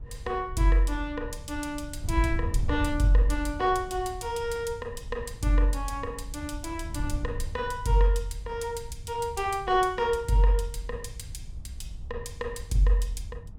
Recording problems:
wind on the microphone; below 86 Hz, SNR 9 dB

